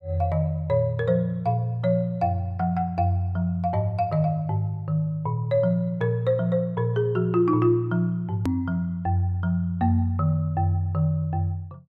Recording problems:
hard cut with a click; at 8.5 s

